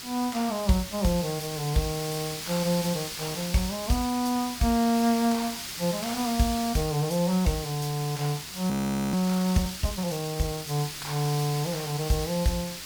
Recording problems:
hiss; SNR 7 dB
audio freezing; at 8.5 s

